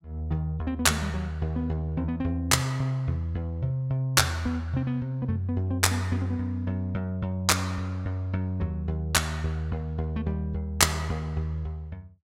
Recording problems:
none

